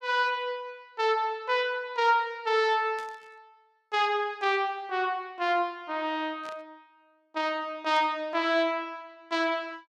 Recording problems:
static burst; at 3 s, at 6.5 s and at 8 s; peak -14 dB vs average level

